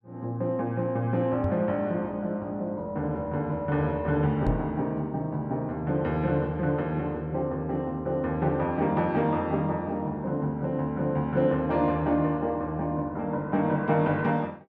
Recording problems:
knock on the microphone; at 1.5 s and at 4.5 s; peak +2 dB vs average level

